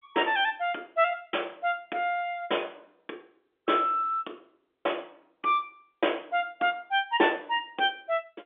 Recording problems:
phone line; 260 Hz to 3.6 kHz, G.711

